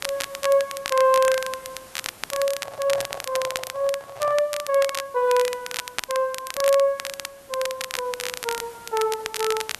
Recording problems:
lossy codec; Vorbis, log-spectral distance 5 dB
hiss; slope -3 dB per octave, SNR 22 dB
crackle; vinyl, SNR 8 dB
microphone handling noise; from 2.5 to 4.5 s; peak -6 dB vs average level

